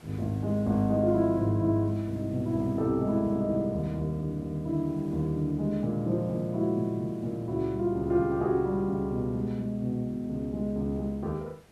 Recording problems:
hiss; slope -5 dB per octave, SNR 27 dB

